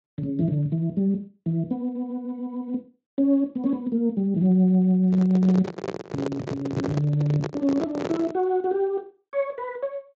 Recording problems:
lossy compression; Speex, log-spectral distance 2 dB
microphone handling noise; from 5 to 8.5 s; peak 0 dB vs average level

